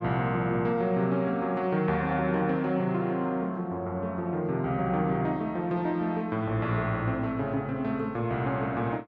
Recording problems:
none

